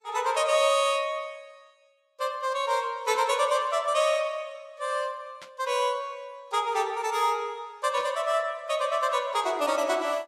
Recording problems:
lossy compression; Vorbis, log-spectral distance 2 dB, nothing above 12.7 kHz
static burst; at 3 s, at 5.5 s and at 8 s; peak -12 dB vs average level

